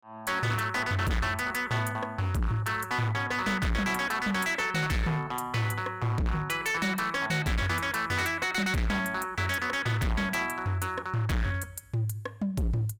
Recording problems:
distortion; hard clipping, signal-to-distortion ratio 7 dB

